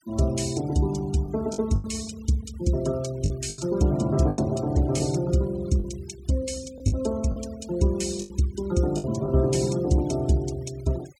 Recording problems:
noise reduction artefacts; signal-to-artefact ratio 20 dB
packet loss; 6% of the sound replaced, filled with the last packet

